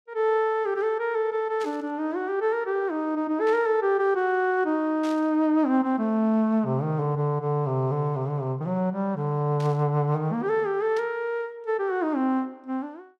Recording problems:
burst of static; 5 times, first at 1.5 s; peak -12 dB vs average level

